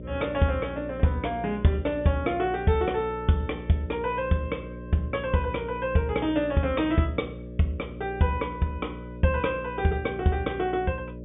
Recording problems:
treble cut off; nothing above 3.6 kHz
hum; 60 Hz, harmonics up to 600 Hz, SNR 12 dB

